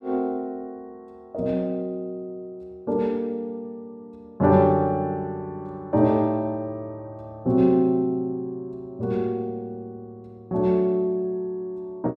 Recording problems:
none

